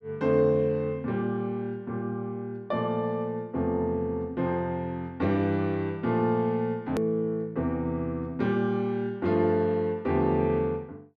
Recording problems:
click at an edit; at 7 s

